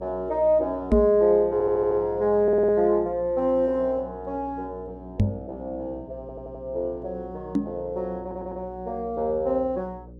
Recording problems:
hum; 60 Hz, harmonics up to 540 Hz, SNR 21 dB
knock on the microphone; at 1 s, at 5 s and at 7.5 s; peak +6 dB vs average level
stutter; 4 times, first at 1.5 s

